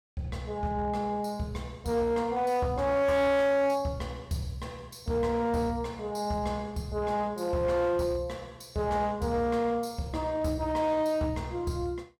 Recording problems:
distortion; hard clipping, signal-to-distortion ratio 12 dB

